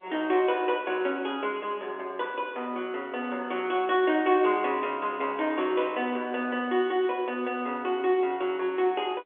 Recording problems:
phone line; 280 Hz to 3.4 kHz, G.711

